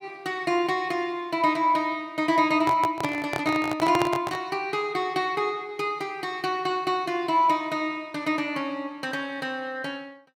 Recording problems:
handling noise; from 2.5 to 4.5 s; peak +3 dB vs average level

